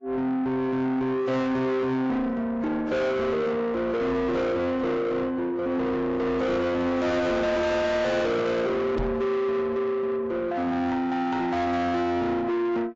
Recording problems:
lossy codec; AAC, log-spectral distance 2 dB, nothing above 7.3 kHz
distorted audio; soft clipping, signal-to-distortion ratio 7 dB
microphone bump; at 9 s; peak +2 dB vs average level

